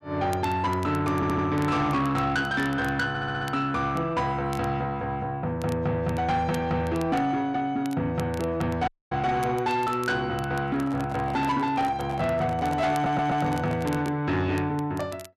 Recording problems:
distortion; soft clipping, signal-to-distortion ratio 12 dB
crackle; vinyl, SNR 22 dB
stutter; at 1 s, at 3 s and at 13 s
dropout; at 9 s
microphone handling noise; from 11 to 14 s; peak -7 dB vs average level

